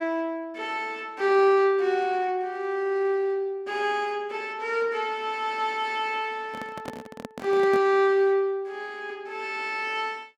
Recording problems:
handling noise; from 6.5 to 8 s; peak -5 dB vs average level

